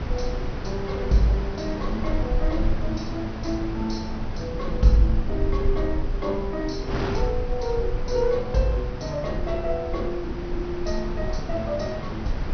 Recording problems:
treble missing; nothing above 6.2 kHz
low-frequency rumble; below 52 Hz, strongest tone 20 Hz, SNR 6 dB
wind noise; below 790 Hz, SNR 7 dB

